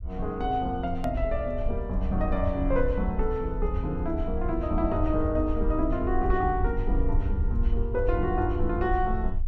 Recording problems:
low-frequency rumble; below 64 Hz, SNR 3 dB
click at an edit; at 1 s

